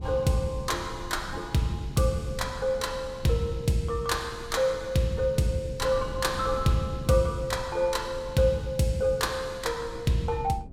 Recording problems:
wind on the microphone; below 170 Hz, SNR 15 dB

